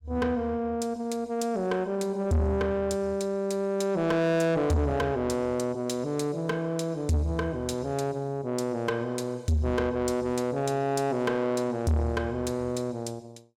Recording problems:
distorted audio; soft clipping, signal-to-distortion ratio 7 dB

